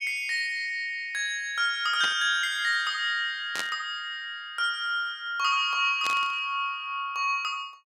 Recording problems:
static burst; at 2 s, at 3.5 s and at 6 s; peak -2 dB vs average level

